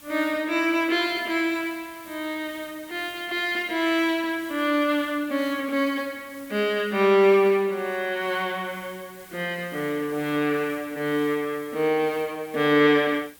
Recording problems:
hiss; slope -1 dB per octave, SNR 22 dB

